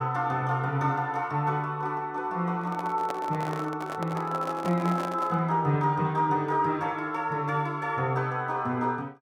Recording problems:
microphone handling noise; from 2.5 to 5.5 s; peak -3 dB vs average level

